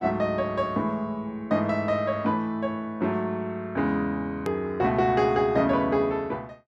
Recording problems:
click at an edit; at 4.5 s

